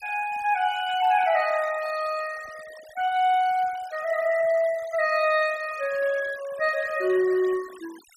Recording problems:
noise reduction artefacts; signal-to-artefact ratio 20 dB

